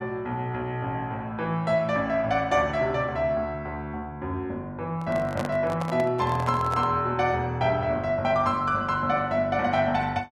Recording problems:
handling noise; from 5 to 7 s; peak -2 dB vs average level

